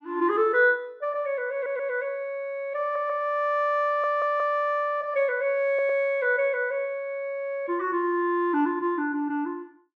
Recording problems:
audio stuttering; 4 times, first at 1.5 s

